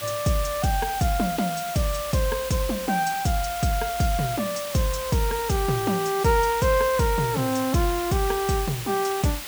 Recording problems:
hiss; slope +1 dB per octave, SNR 9 dB

